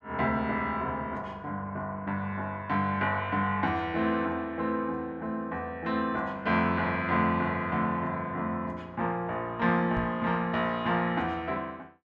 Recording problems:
microphone bump; at 10 s; peak -2 dB vs average level

